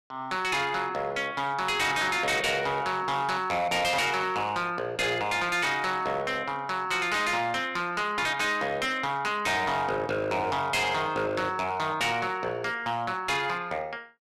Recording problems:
distorted audio; hard clipping, signal-to-distortion ratio 8 dB

